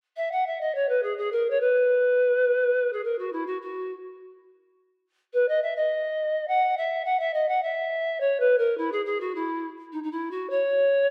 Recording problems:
none

